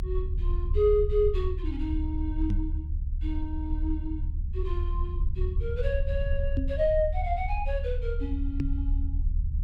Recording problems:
rumble; below 74 Hz, strongest tone 34 Hz, SNR 0 dB
microphone bump; at 2.5 s, at 6.5 s and at 8.5 s; peak +4 dB vs average level

